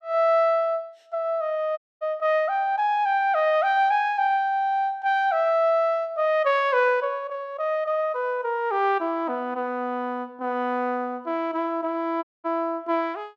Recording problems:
audio cutting out; at 2 s and at 12 s

